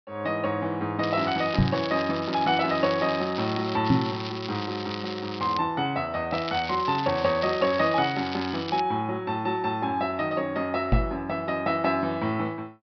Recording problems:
low-pass filter; nothing above 5.5 kHz
crackling; from 1 to 4 s, from 4 to 5.5 s and from 6.5 to 9 s; loose cable, SNR 11 dB
microphone thump; at 1.5 s, at 4 s and at 11 s; peak +8 dB vs average level

